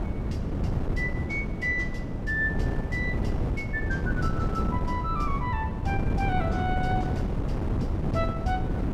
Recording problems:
wind on the microphone; below 240 Hz, SNR -2 dB

